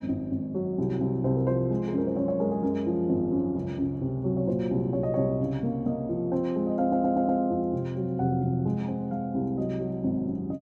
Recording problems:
stutter; at 7 s

